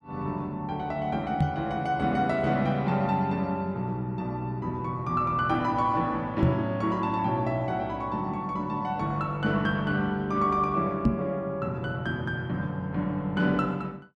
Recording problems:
microphone thump; at 1.5 s, at 6.5 s and at 11 s; peak +8 dB vs average level

